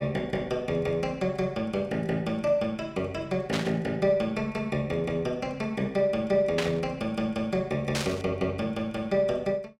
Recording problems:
static burst; at 3.5 s, at 6.5 s and at 8 s; peak +3 dB vs average level

